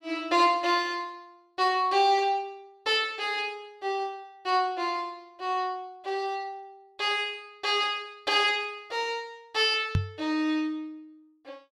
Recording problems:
microphone thump; at 10 s; peak +5 dB vs average level

